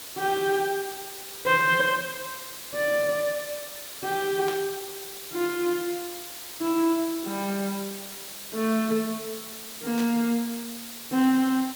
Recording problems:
hiss; slope 0 dB per octave, SNR 10 dB
static burst; at 4.5 s and at 10 s; peak -7 dB vs average level

